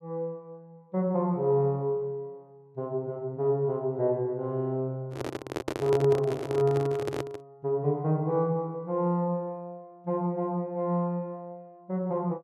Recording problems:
handling noise; from 5 to 7.5 s; peak +1 dB vs average level

